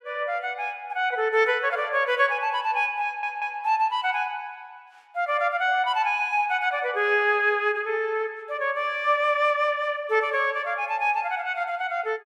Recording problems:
audio stuttering; at 3 s

